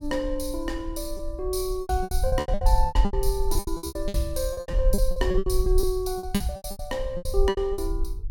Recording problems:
low-frequency rumble; below 50 Hz, SNR 2 dB
lost packets; 21% of the sound replaced, filled with repeated pitch periods

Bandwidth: 17 kHz